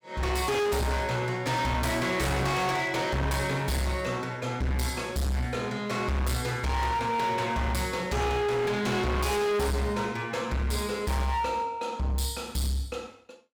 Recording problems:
distortion; hard clipping, signal-to-distortion ratio 7 dB

